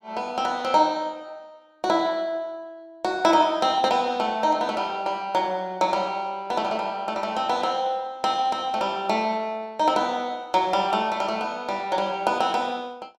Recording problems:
none

